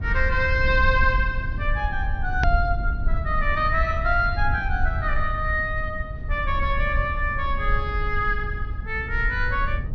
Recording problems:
treble missing; nothing above 6.2 kHz
low-frequency rumble; below 70 Hz, SNR 3 dB
hard cut with a click; at 2.5 s

